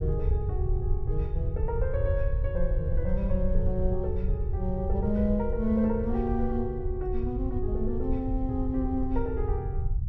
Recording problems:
rumble; below 84 Hz, SNR 0 dB

